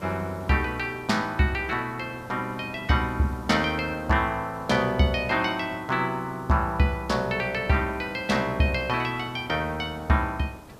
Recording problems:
hiss; slope -7 dB per octave, SNR 19 dB

